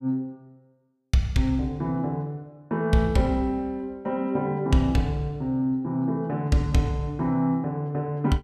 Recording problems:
none

